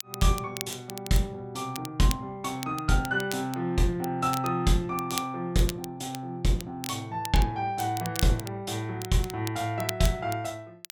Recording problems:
crackle; vinyl, SNR 11 dB

